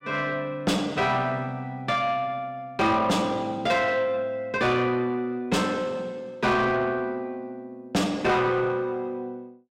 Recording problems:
distortion; soft clipping, signal-to-distortion ratio 8 dB

